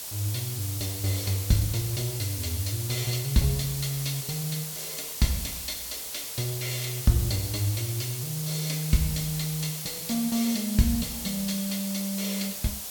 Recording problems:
background hiss; SNR 4 dB

